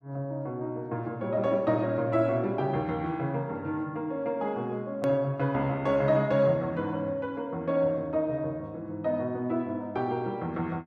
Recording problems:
click at an edit; at 5 s

